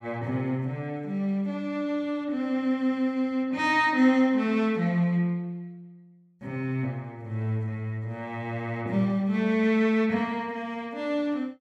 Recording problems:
none

